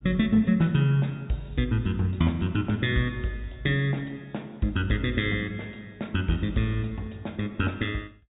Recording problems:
treble missing; nothing above 4 kHz

